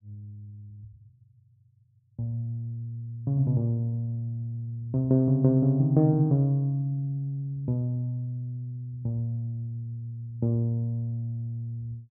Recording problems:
none

